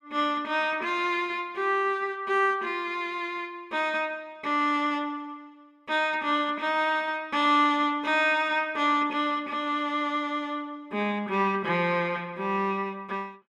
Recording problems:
none

